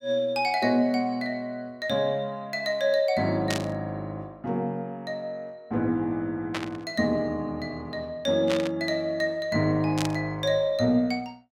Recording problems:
burst of static; 4 times, first at 3.5 s; peak 0 dB vs average level

